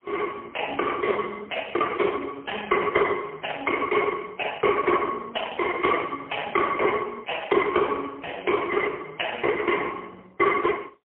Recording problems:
telephone audio; 280 Hz to 3.1 kHz, AMR-NB, then MP3

